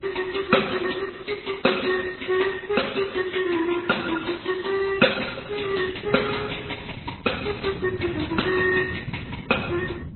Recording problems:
lossy compression; Opus, then MP3, log-spectral distance 12 dB, nothing above 4.1 kHz
wind noise; below 200 Hz, SNR 10 dB

